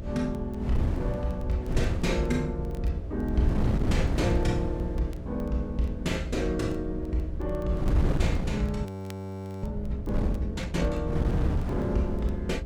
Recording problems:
hum; 60 Hz, harmonics up to 660 Hz, SNR 9 dB
rumble; below 80 Hz, SNR 8 dB
wind noise; below 190 Hz, SNR 1 dB
crackling; vinyl, SNR 29 dB
audio freezing; at 9 s for 1 s

